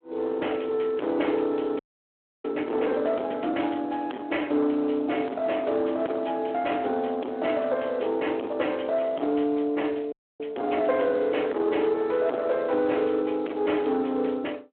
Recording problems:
phone line; 240 Hz to 3.4 kHz, Speex
distorted audio; soft clipping, signal-to-distortion ratio 6 dB
audio freezing; at 2 s for 0.5 s and at 10 s

